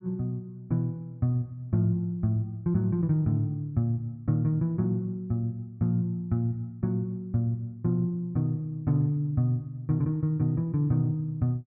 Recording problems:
none

